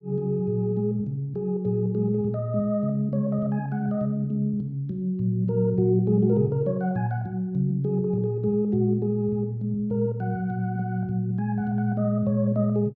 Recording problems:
none

